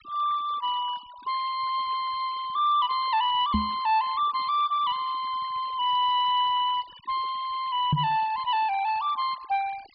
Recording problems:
treble cut off; nothing above 5 kHz
denoising artefacts; signal-to-artefact ratio 22 dB
knock on the microphone; at 3.5 s and at 8 s; peak +5 dB vs average level

